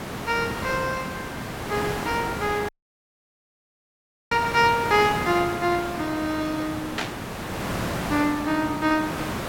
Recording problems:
background hiss; slope -5 dB per octave, SNR 6 dB
audio cutting out; at 2.5 s for 1.5 s
static burst; at 7 s; peak +1 dB vs average level

